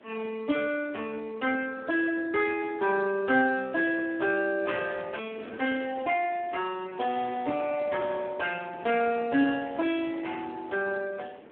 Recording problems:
phone line; 190 Hz to 3.3 kHz, Speex
wind on the microphone; below 730 Hz, SNR 20 dB

